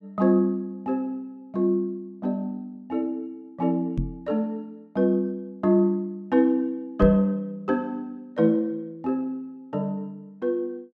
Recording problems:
knock on the microphone; at 4 s and at 7 s; peak +3 dB vs average level

